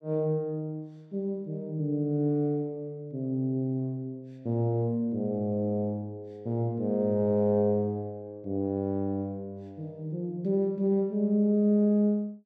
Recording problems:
none

